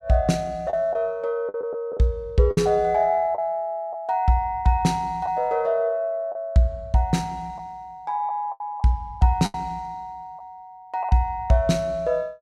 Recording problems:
packet loss; 4% of the sound replaced, filled with the last packet

